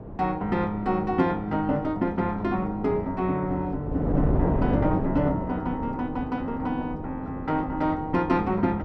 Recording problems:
wind on the microphone; below 410 Hz, SNR 5 dB

